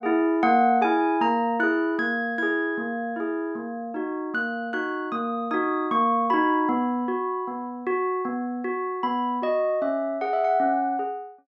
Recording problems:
none

